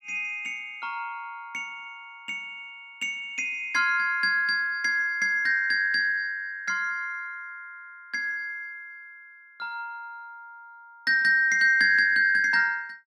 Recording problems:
none

